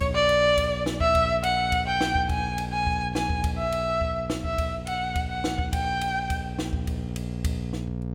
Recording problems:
mains hum; 60 Hz, harmonics up to 720 Hz, SNR 8 dB

